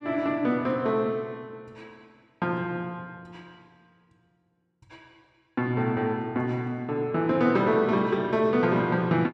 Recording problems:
none

